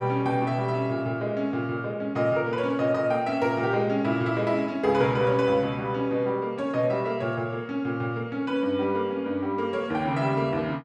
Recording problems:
none

